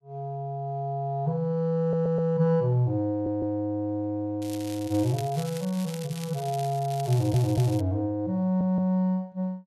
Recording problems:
audio stuttering; 4 times, first at 2 s
crackle; from 4.5 to 8 s; loose cable, SNR 16 dB

